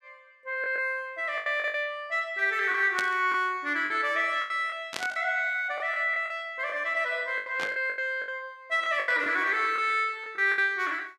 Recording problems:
lost packets; 10% of the sound replaced, filled with the last packet
burst of static; 4 times, first at 3 s; peak -1 dB vs average level

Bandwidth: 14.5 kHz